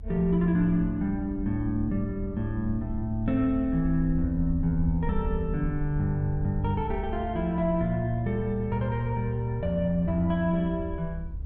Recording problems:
rumble; below 70 Hz, SNR 9 dB

